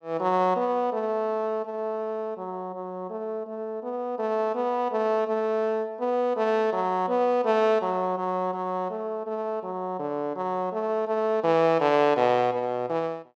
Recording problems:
none

